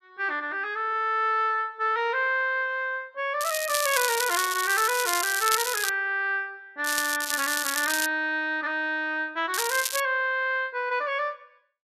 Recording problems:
crackle; 4 times, first at 3.5 s; loose cable, SNR 3 dB

